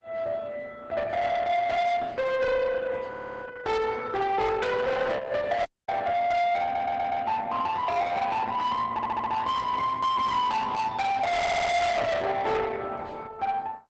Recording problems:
codec artefacts; Opus, log-spectral distance 3 dB, nothing above 8 kHz
distorted audio; soft clipping, signal-to-distortion ratio 7 dB
stutter; 4 times, first at 3 s
audio cutting out; at 5.5 s

